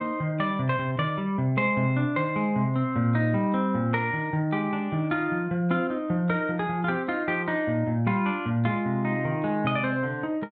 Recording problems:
none

